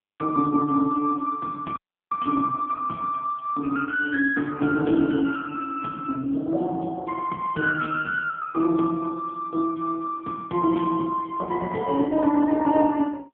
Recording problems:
phone line; 190 Hz to 3.3 kHz, AMR-NB
audio freezing; at 2 s

